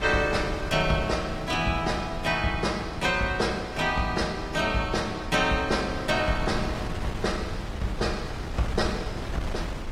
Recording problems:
lossy codec; AAC, log-spectral distance 3 dB, nothing above 15.1 kHz
wind noise; below 500 Hz, SNR 8 dB

